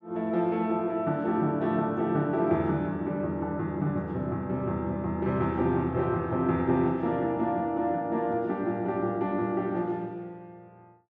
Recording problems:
low-pass filter; nothing above 8 kHz

